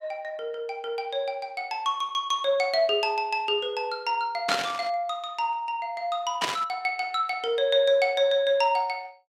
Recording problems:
static burst; at 4.5 s and at 6.5 s; peak +3 dB vs average level

